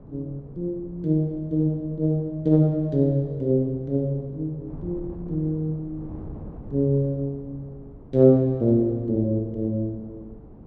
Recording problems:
wind on the microphone; below 270 Hz, SNR 20 dB

